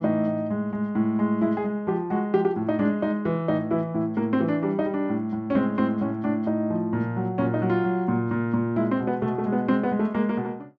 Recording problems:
none

